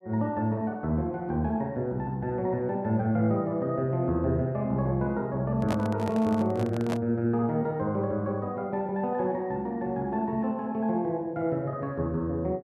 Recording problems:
microphone handling noise; from 5.5 to 7 s; peak -1 dB vs average level

